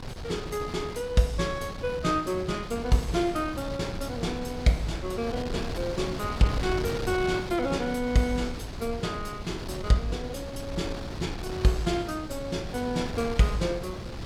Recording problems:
wind noise; below 550 Hz, SNR 7 dB

